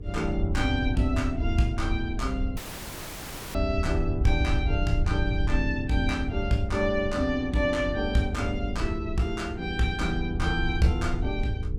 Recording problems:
hum; 60 Hz, harmonics up to 480 Hz, SNR 15 dB
wind on the microphone; below 88 Hz, SNR 3 dB
dropout; at 2.5 s for 1 s

